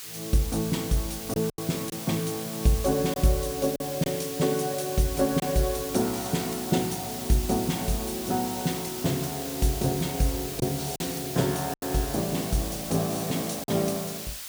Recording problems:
hiss; slope +3 dB per octave, SNR 7 dB
packet loss; 3% of the sound replaced, filled with silence

